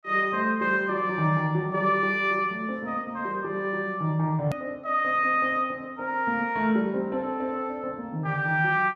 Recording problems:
edit click; at 4.5 s

